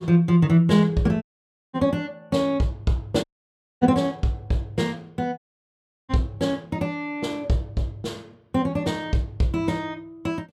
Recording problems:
audio cutting out; at 1 s for 0.5 s, at 3 s for 0.5 s and at 5.5 s for 0.5 s

